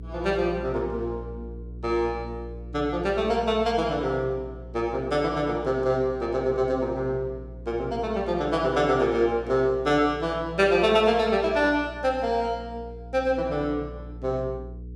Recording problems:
hum; 60 Hz, harmonics up to 480 Hz, SNR 16 dB

